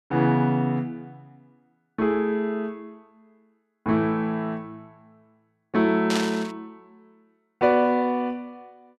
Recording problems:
burst of static; at 6 s; peak 0 dB vs average level

